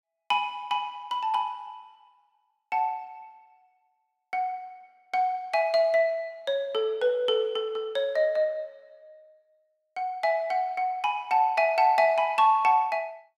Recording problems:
none

